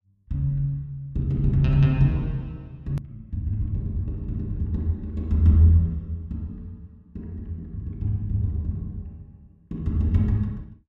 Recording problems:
click at an edit; at 3 s

